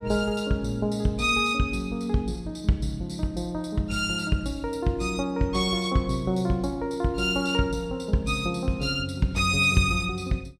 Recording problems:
none

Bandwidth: 14.5 kHz